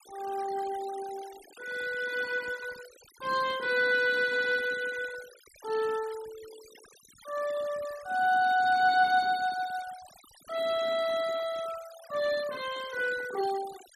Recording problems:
noise reduction artefacts; signal-to-artefact ratio 18 dB

